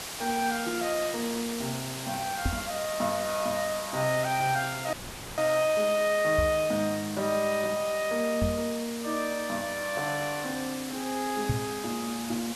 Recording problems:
background hiss; slope -1 dB per octave, SNR 8 dB
knock on the microphone; 4 times, first at 2.5 s; peak +5 dB vs average level
dropout; at 5 s

